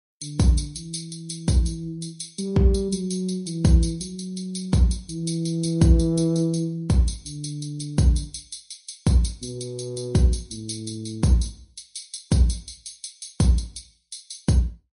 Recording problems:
lossy codec; MP3, log-spectral distance 6 dB, nothing above 10.4 kHz

